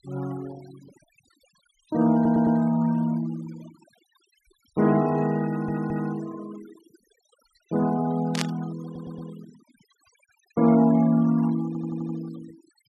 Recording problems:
denoising artefacts; signal-to-artefact ratio 22 dB
audio stuttering; 4 times, first at 2 s
burst of static; at 8.5 s; peak 0 dB vs average level

